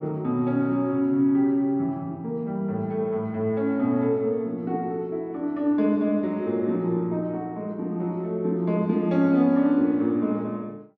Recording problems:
none

